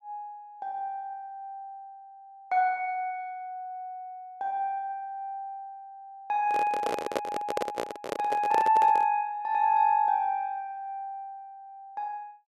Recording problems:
handling noise; from 6.5 to 9 s; peak +4 dB vs average level

